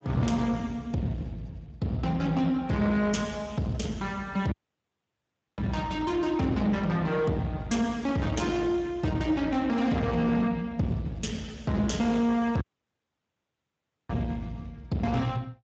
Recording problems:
codec artefacts; Speex, log-spectral distance 3 dB, nothing above 7.3 kHz
distortion; soft clipping, signal-to-distortion ratio 11 dB
dropout; at 4.5 s for 1 s and at 13 s for 1.5 s

